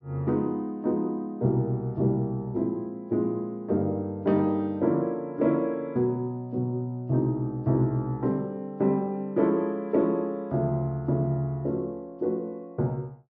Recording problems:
low-pass filter; nothing above 6 kHz

